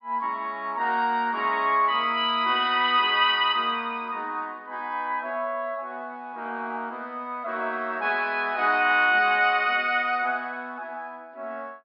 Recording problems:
treble cut off; nothing above 5.5 kHz

